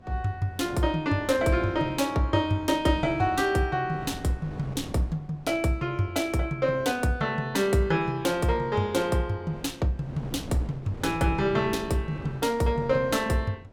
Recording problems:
wind noise; below 390 Hz, SNR 16 dB

